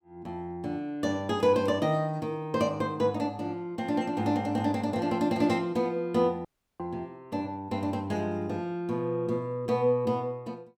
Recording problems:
dropout; at 6.5 s

